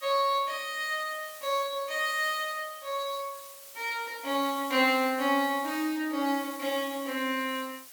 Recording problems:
background hiss; slope +2 dB per octave, SNR 15 dB

